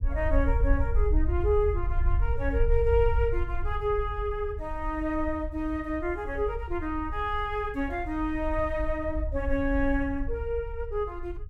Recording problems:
rumble; below 64 Hz, SNR 3 dB

